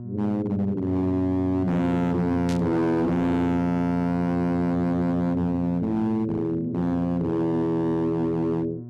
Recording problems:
distortion; hard clipping, signal-to-distortion ratio 6 dB
hum; 60 Hz, harmonics up to 720 Hz, SNR 14 dB
static burst; at 2.5 s; peak -9 dB vs average level

